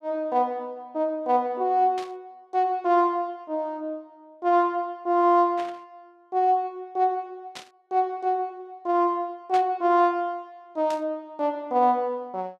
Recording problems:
static burst; 5 times, first at 2 s; peak -9 dB vs average level

